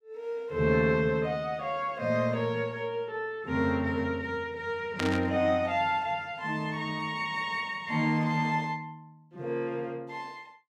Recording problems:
burst of static; at 5 s; peak +1 dB vs average level

